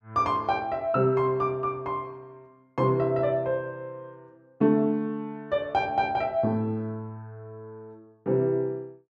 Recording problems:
none

